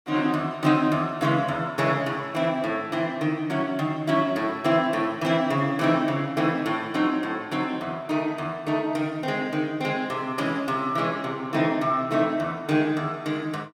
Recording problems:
none

